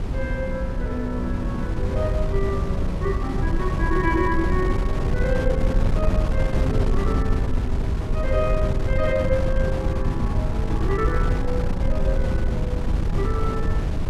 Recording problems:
mains hum; 50 Hz, harmonics up to 500 Hz, SNR 7 dB
wind on the microphone; below 110 Hz, SNR -2 dB

